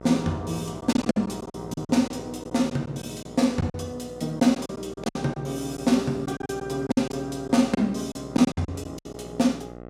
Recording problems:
electrical hum; 60 Hz, harmonics up to 2 kHz, SNR 15 dB
lost packets; 11% of the sound replaced, filled with silence

